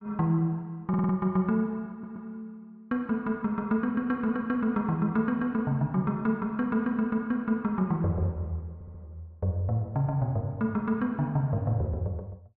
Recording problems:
stutter; at 1 s, at 2 s and at 8.5 s

